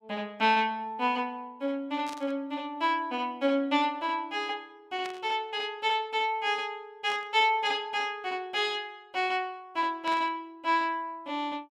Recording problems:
static burst; 4 times, first at 2 s; peak -7 dB vs average level

